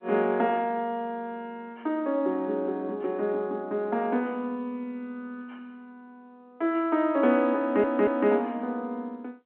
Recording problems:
phone line; 190 Hz to 3.3 kHz, G.711
stutter; at 7.5 s

